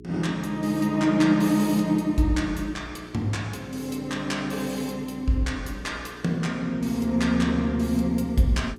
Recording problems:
hum; 60 Hz, harmonics up to 420 Hz, SNR 20 dB

